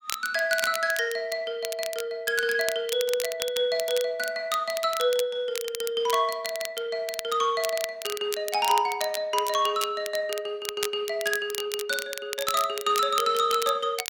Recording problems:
crackle; vinyl, SNR 9 dB

